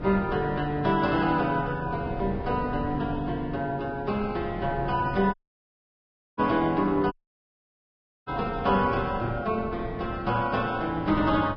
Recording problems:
codec artefacts; Vorbis, log-spectral distance 2 dB, nothing above 5 kHz
wind on the microphone; below 310 Hz, SNR 11 dB
dropout; at 5.5 s for 1 s and at 7 s for 1 s

